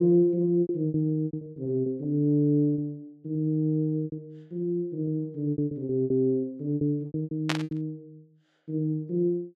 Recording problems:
lost packets; 13% of the sound replaced, filled with repeated pitch periods
burst of static; at 7.5 s; peak +3 dB vs average level

